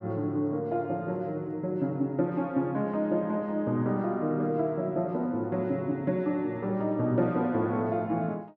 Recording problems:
none

